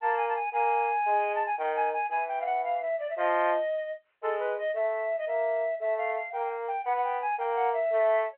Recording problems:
phone line; 320 Hz to 3.3 kHz, G.711

